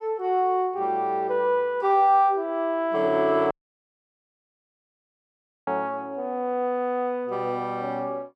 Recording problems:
dropout; at 3.5 s for 2 s

